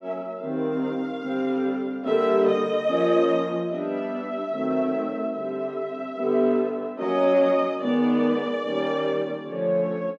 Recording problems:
none

